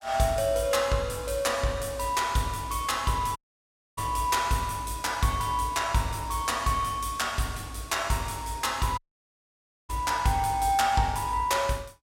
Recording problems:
dropout; at 3.5 s for 0.5 s and at 9 s for 1 s

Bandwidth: 16 kHz